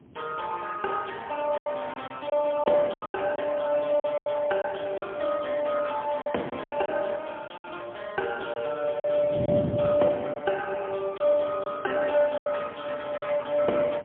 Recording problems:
telephone audio; 300 Hz to 3.3 kHz, AMR-NB, then MP3
wind noise; below 340 Hz, SNR 14 dB
lost packets; 7% of the sound replaced, filled with silence

